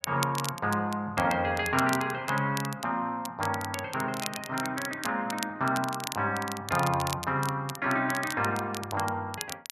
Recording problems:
crackling; vinyl, SNR 10 dB

